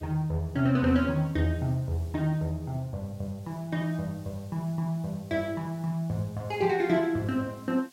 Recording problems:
hiss; slope 0 dB per octave, SNR 27 dB

